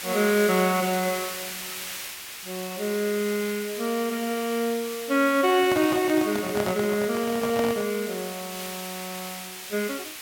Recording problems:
background hiss; SNR 9 dB
crackle; from 2.5 to 4 s; loose cable, SNR 27 dB
microphone handling noise; from 5.5 to 8 s; peak -2 dB vs average level

